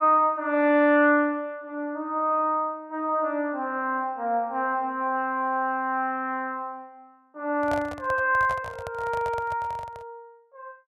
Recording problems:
handling noise; from 7.5 to 10 s; peak -4 dB vs average level

